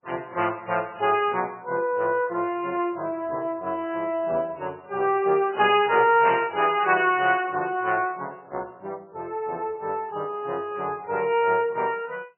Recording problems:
lossy codec; MP3, log-spectral distance 2 dB, nothing above 2.6 kHz

